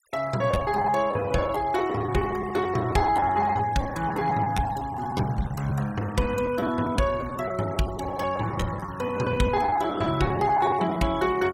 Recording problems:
denoising artefacts; signal-to-artefact ratio 18 dB
packet loss; 13% of the sound replaced, filled with the last packet

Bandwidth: 16 kHz